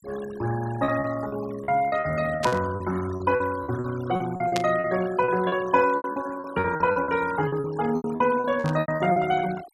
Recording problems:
noise reduction artefacts; signal-to-artefact ratio 16 dB
packet loss; 16% of the sound replaced, filled with repeated pitch periods
static burst; at 2.5 s, at 4.5 s and at 8.5 s; peak 0 dB vs average level

